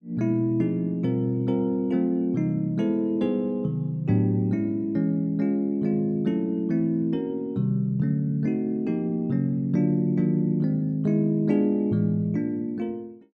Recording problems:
none

